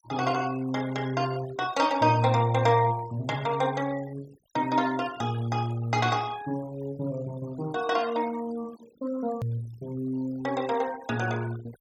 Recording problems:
noise reduction artefacts; signal-to-artefact ratio 20 dB
edit click; at 9.5 s

